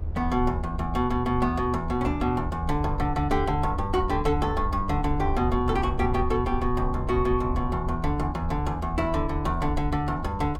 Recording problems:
rumble; below 78 Hz, SNR 6 dB
wind noise; below 520 Hz, SNR 20 dB

